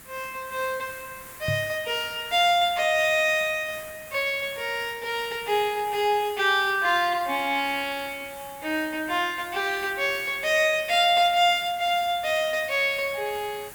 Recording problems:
hiss; SNR 18 dB
microphone bump; at 1.5 s; peak -2 dB vs average level

